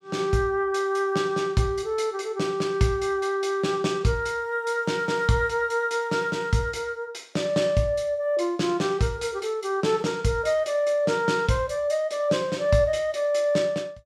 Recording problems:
none

